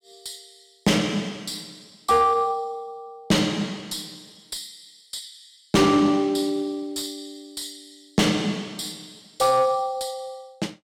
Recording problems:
distortion; soft clipping, signal-to-distortion ratio 10 dB

